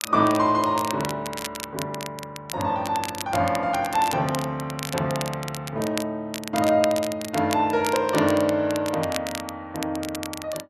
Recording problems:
crackle; vinyl, SNR 10 dB

